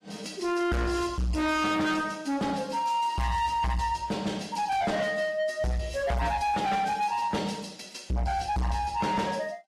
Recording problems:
lossy codec; AAC, log-spectral distance 3 dB
distorted audio; soft clipping, signal-to-distortion ratio 7 dB

